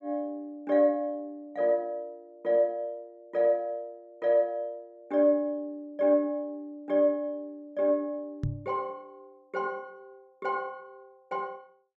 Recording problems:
microphone bump; at 8.5 s; peak +2 dB vs average level

